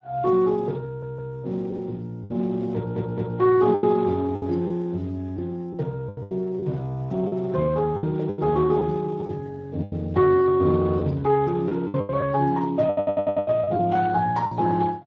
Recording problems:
lossy compression; Speex, log-spectral distance 2 dB
packet loss; 8% of the sound replaced, filled with the last packet
audio stuttering; at 1 s, at 3 s and at 13 s

